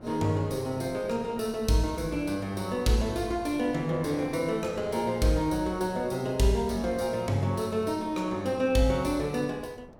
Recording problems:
wind noise; below 520 Hz, SNR 21 dB

